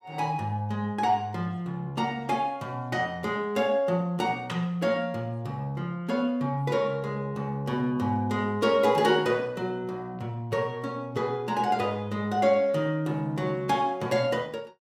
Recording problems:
none

